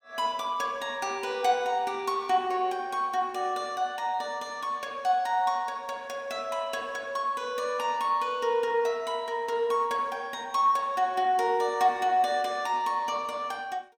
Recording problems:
none

